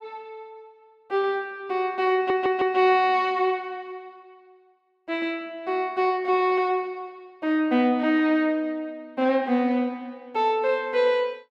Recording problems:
audio stuttering; at 2 s

